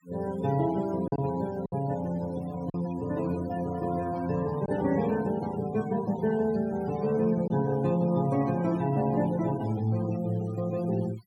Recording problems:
noise reduction artefacts; signal-to-artefact ratio 19 dB
packet loss; 1.8% of the sound replaced, filled with silence

